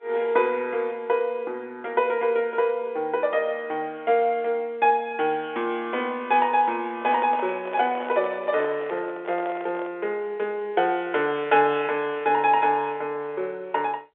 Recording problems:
telephone audio; 300 Hz to 3.5 kHz, G.711
handling noise; from 7 to 10 s; peak -6 dB vs average level

